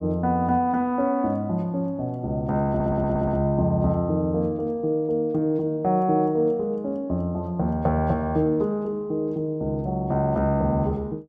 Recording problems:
audio stuttering; at 2.5 s

